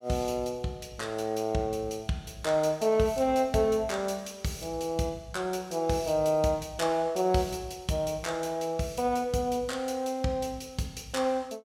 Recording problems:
none

